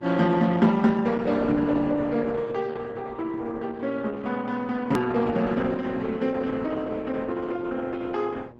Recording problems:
lossy codec; Opus, log-spectral distance 3 dB, nothing above 13.1 kHz
hum; 60 Hz, harmonics up to 1.1 kHz, SNR 24 dB
edit click; at 5 s

